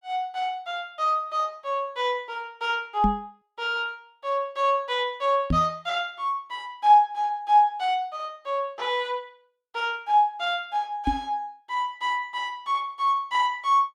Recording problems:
microphone thump; at 3 s, at 5.5 s and at 11 s; peak +4 dB vs average level

